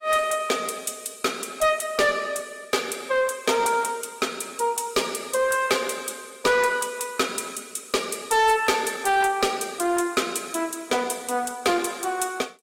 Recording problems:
lossy codec; AAC, log-spectral distance 5 dB, nothing above 16 kHz
distortion; soft clipping, signal-to-distortion ratio 11 dB

